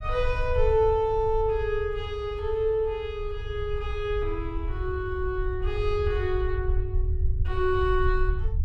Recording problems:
low-frequency rumble; below 72 Hz, SNR 4 dB

